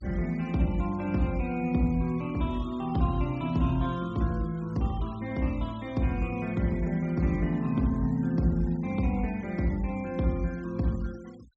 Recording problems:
low-pass filter; nothing above 8 kHz
noise reduction artefacts; signal-to-artefact ratio 25 dB

